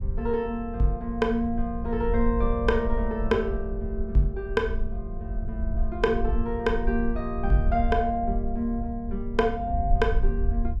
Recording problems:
low-frequency rumble; below 58 Hz, SNR 5 dB

